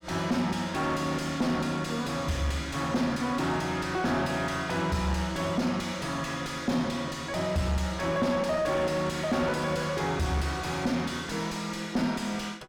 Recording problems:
distortion; soft clipping, signal-to-distortion ratio 6 dB

